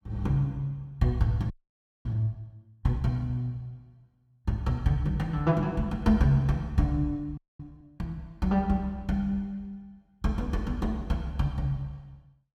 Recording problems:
audio freezing; at 1.5 s for 0.5 s and at 7.5 s

